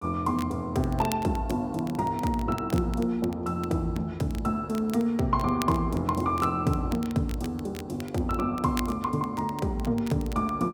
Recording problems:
crackle; vinyl, SNR 18 dB

